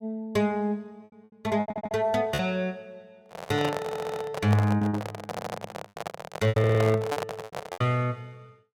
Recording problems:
packet loss; 9% of the sound replaced, filled with repeated pitch periods
stutter; 4 times, first at 1.5 s
microphone handling noise; from 3 to 8 s; peak +1 dB vs average level

